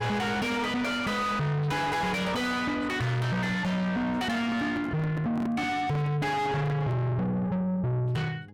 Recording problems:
distortion; soft clipping, signal-to-distortion ratio 6 dB
hum; 50 Hz, harmonics up to 600 Hz, SNR 22 dB
handling noise; from 4 to 7 s; peak 0 dB vs average level

